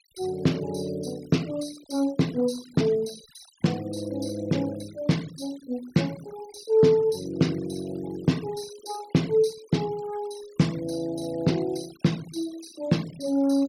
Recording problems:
denoising artefacts; signal-to-artefact ratio 20 dB

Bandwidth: 17 kHz